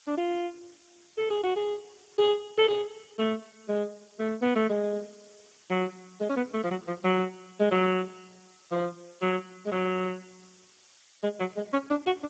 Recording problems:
codec artefacts; Speex, log-spectral distance 12 dB, nothing above 7.3 kHz
background hiss; slope +3 dB per octave, SNR 28 dB

